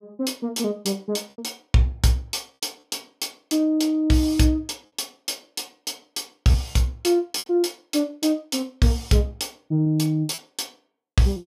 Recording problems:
packet loss; 3% of the sound replaced, filled with repeated pitch periods

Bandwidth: 15 kHz